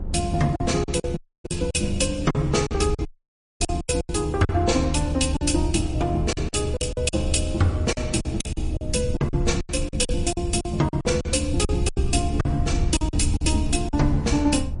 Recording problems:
codec artefacts; MP3, log-spectral distance 4 dB, nothing above 10.4 kHz
rumble; below 80 Hz, SNR 5 dB
wind noise; below 300 Hz, SNR 16 dB
lost packets; 13% of the sound replaced, filled with silence
dropout; at 1 s and at 3 s for 0.5 s

